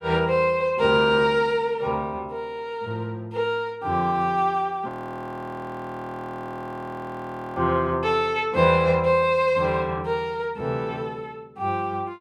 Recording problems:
frozen audio; at 5 s for 2.5 s

